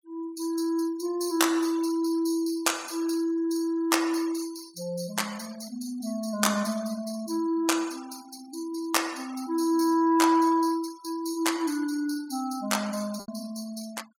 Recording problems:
noise reduction artefacts; signal-to-artefact ratio 19 dB
lost packets; 0.6% of the sound replaced, filled with repeated pitch periods

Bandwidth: 17.5 kHz